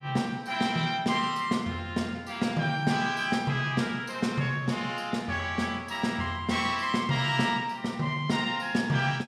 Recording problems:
none

